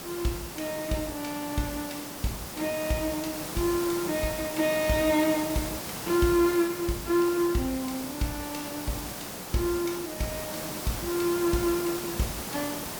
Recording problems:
background hiss; slope -4 dB per octave, SNR 6 dB

